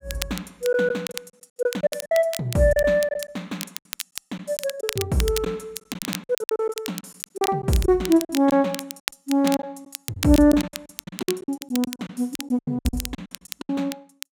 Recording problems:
crackle; vinyl, SNR 11 dB
lost packets; 14% of the sound replaced, filled with silence

